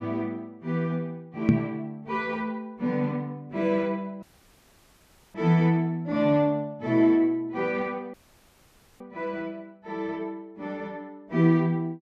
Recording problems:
microphone bump; at 1.5 s; peak +9 dB vs average level
dropout; at 4 s for 1 s and at 8 s for 1 s

